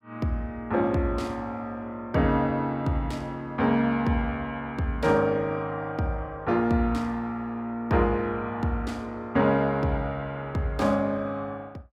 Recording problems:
none

